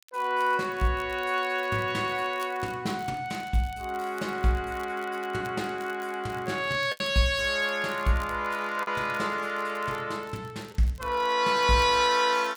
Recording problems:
crackle; vinyl, SNR 25 dB
packet loss; 1.1% of the sound replaced, filled with the last packet

